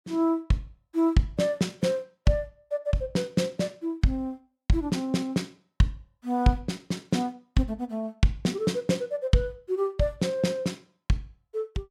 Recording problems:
none

